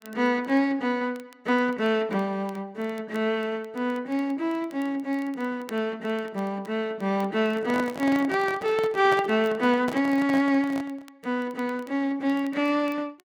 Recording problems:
crackling; vinyl, SNR 29 dB
handling noise; from 7.5 to 11 s; peak -3 dB vs average level

